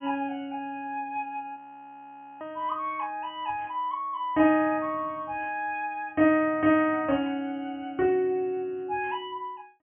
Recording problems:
treble missing; nothing above 3.2 kHz
frozen audio; at 1.5 s for 1 s

